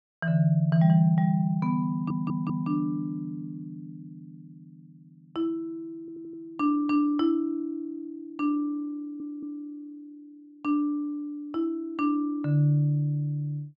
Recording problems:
audio stuttering; at 2 s, at 6 s and at 9 s

